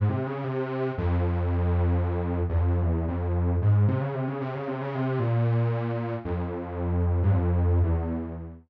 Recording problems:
none

